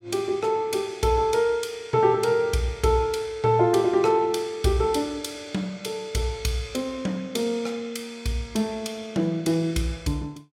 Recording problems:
none

